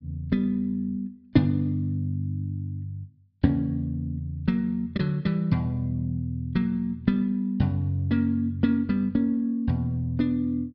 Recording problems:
treble missing; nothing above 5.5 kHz

